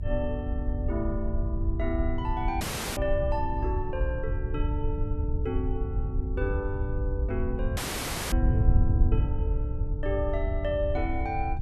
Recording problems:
rumble; below 66 Hz, strongest tone 58 Hz, SNR 7 dB
wind on the microphone; below 90 Hz, SNR -3 dB
dropout; at 2.5 s and at 8 s for 0.5 s

